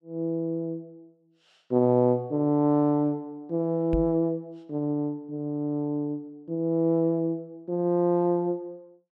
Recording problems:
microphone bump; at 4 s; peak -1 dB vs average level

